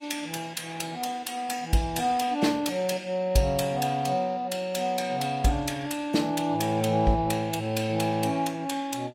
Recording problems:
lossy compression; AAC, log-spectral distance 3 dB, nothing above 15.5 kHz

